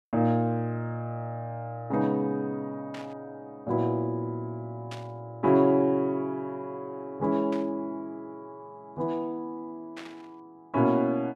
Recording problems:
static burst; 4 times, first at 3 s; peak -10 dB vs average level

